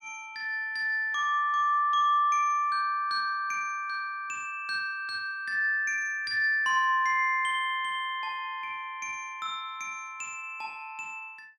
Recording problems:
none

